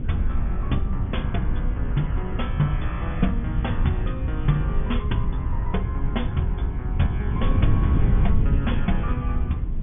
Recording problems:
treble missing; nothing above 3.5 kHz
rumble; below 98 Hz, SNR 3 dB
wind noise; below 100 Hz, SNR -2 dB

